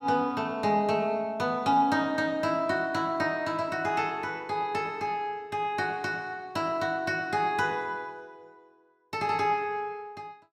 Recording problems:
none

